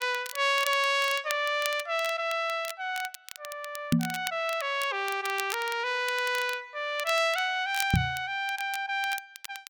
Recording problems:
crackling; vinyl, SNR 13 dB
knock on the microphone; at 4 s and at 8 s; peak +8 dB vs average level

